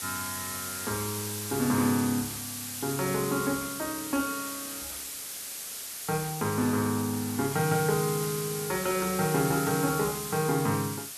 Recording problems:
background hiss; slope +2 dB per octave, SNR 5 dB

